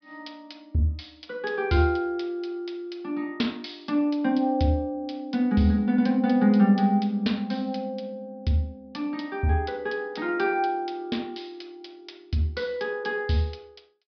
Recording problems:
low-pass filter; nothing above 5.5 kHz

